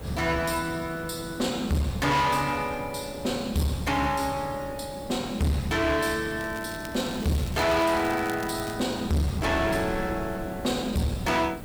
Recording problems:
distortion; hard clipping, uneven, signal-to-distortion ratio 7 dB
hiss; slope -7 dB per octave, SNR 15 dB
wind noise; below 430 Hz, SNR 16 dB
crackling; from 6.5 to 9 s; loose cable, SNR 17 dB

